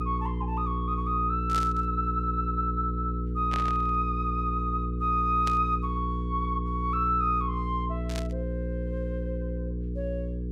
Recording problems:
hum; 60 Hz, harmonics up to 480 Hz, SNR 2 dB
static burst; 4 times, first at 1.5 s; peak -3 dB vs average level

